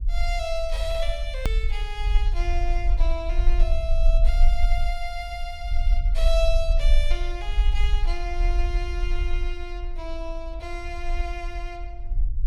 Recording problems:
rumble; below 44 Hz, strongest tone 20 Hz, SNR -6 dB
edit click; at 1.5 s

